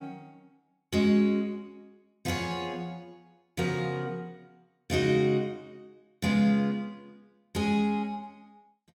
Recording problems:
none

